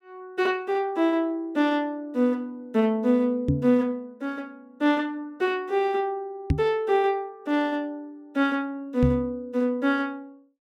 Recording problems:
microphone bump; at 3.5 s, at 6.5 s and at 9 s; peak +6 dB vs average level

